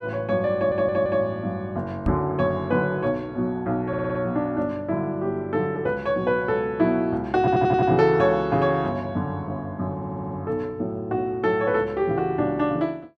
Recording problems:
stutter; 4 times, first at 0.5 s
knock on the microphone; at 2 s; peak +1 dB vs average level

